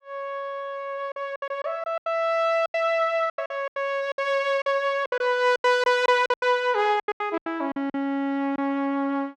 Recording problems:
lost packets; 14% of the sound replaced, filled with silence

